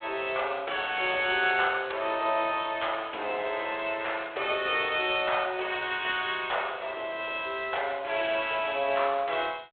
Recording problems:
telephone audio; 340 Hz to 3.5 kHz, G.726

